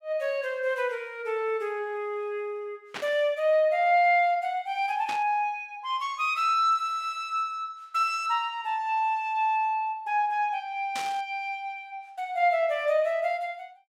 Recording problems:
burst of static; at 3 s, at 5 s and at 11 s; peak -4 dB vs average level

